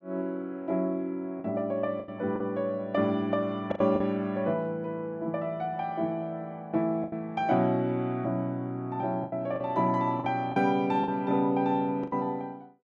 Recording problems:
lost packets; 5% of the sound replaced, filled with the last packet

